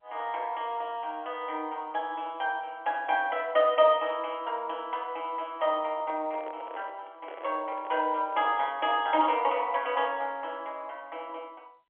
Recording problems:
telephone audio; 240 Hz to 3.4 kHz, G.711
microphone handling noise; from 6 to 9 s; peak -10 dB vs average level

